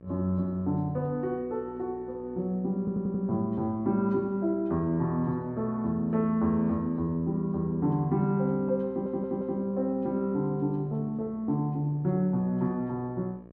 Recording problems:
hum; 60 Hz, harmonics up to 1.3 kHz, SNR 22 dB
audio stuttering; at 3 s and at 9 s

